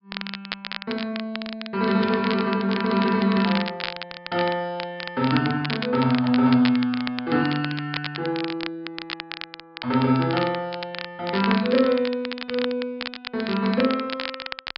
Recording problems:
low-pass filter; nothing above 5.2 kHz
crackle; vinyl, SNR 10 dB

